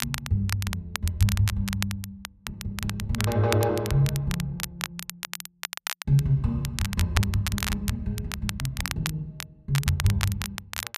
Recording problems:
crackle; vinyl, SNR 7 dB

